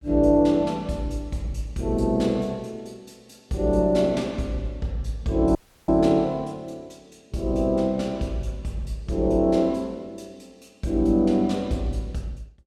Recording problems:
audio cutting out; at 5.5 s

